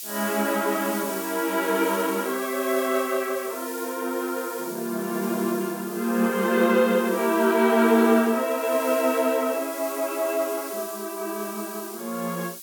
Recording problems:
background hiss; SNR 11 dB

